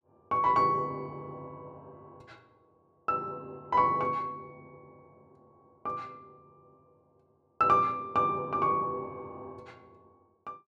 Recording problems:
none

